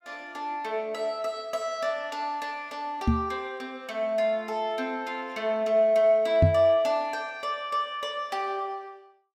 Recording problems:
knock on the microphone; at 3 s and at 6.5 s; peak +9 dB vs average level

